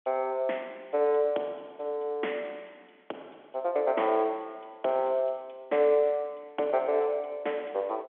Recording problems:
phone line; 280 Hz to 3.4 kHz, G.711

